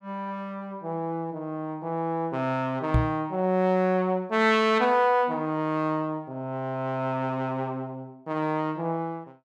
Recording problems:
microphone thump; at 3 s; peak +7 dB vs average level

